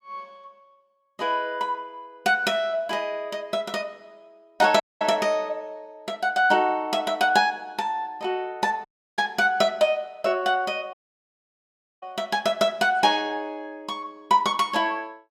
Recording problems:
dropout; at 5 s, at 9 s and at 11 s for 1 s

